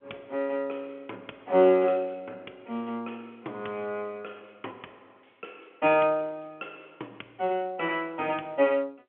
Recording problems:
telephone audio; 260 Hz to 3.3 kHz, G.711

